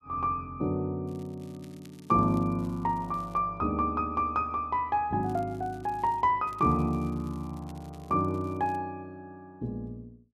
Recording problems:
crackle; from 1 to 3.5 s, from 5 to 6 s and from 6.5 to 9 s; loose cable, SNR 30 dB

